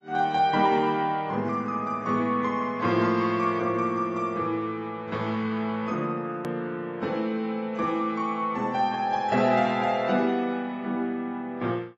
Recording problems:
lossy compression; AAC, log-spectral distance 2 dB
edit click; at 6.5 s

